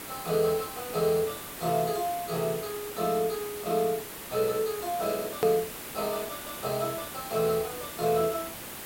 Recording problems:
hiss; slope -3 dB per octave, SNR 8 dB
click at an edit; at 5.5 s

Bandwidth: 16.5 kHz